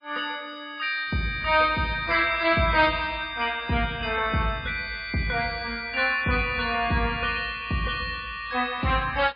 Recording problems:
lossy compression; MP3, log-spectral distance 3 dB, nothing above 4.2 kHz

